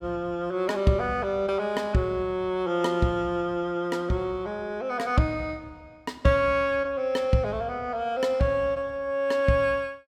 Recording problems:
none

